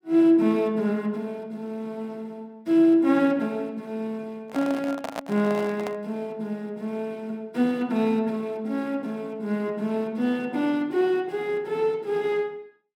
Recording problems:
microphone handling noise; from 4.5 to 6 s; peak -2 dB vs average level

